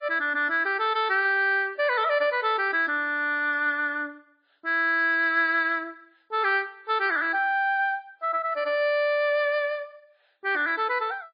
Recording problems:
codec artefacts; MP3, log-spectral distance 2 dB, nothing above 4.6 kHz

